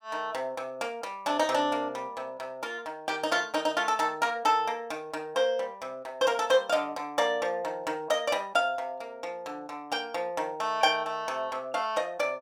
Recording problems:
none

